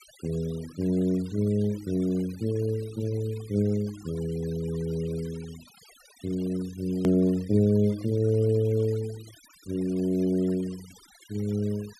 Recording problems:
noise reduction artefacts; signal-to-artefact ratio 23 dB
click at an edit; at 7 s

